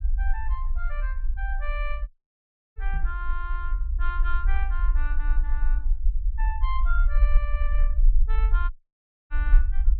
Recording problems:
treble cut off; nothing above 4.2 kHz
rumble; below 44 Hz, SNR -10 dB
audio cutting out; at 2 s for 0.5 s and at 8.5 s for 0.5 s
microphone bump; at 3 s; peak 0 dB vs average level

